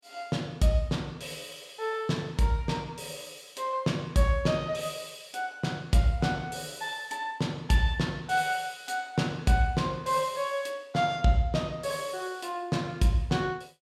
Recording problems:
none

